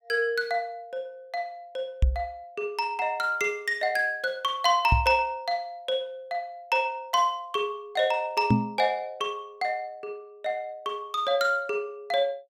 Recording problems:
knock on the microphone; at 2 s, at 5 s and at 8.5 s; peak +9 dB vs average level

